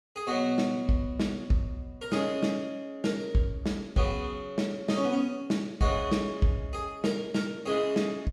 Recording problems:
none

